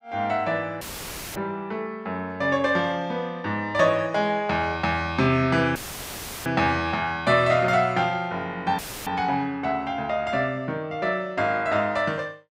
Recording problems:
dropout; at 1 s for 0.5 s, at 6 s for 0.5 s and at 9 s; filled with static

